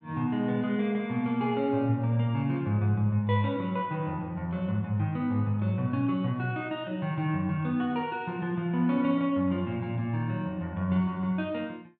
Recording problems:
none

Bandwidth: 4.5 kHz